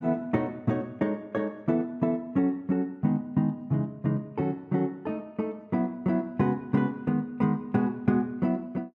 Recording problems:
none

